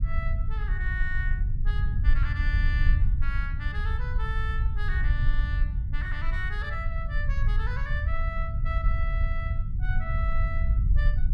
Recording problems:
low-frequency rumble; below 70 Hz, SNR -8 dB

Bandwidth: 14.5 kHz